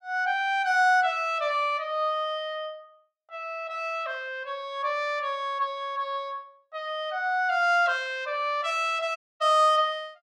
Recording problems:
audio cutting out; at 9 s

